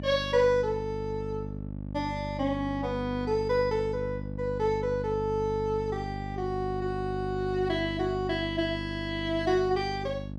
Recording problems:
hum; 50 Hz, harmonics up to 650 Hz, SNR 7 dB

